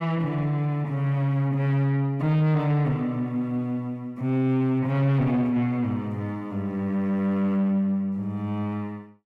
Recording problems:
distortion; soft clipping, signal-to-distortion ratio 10 dB

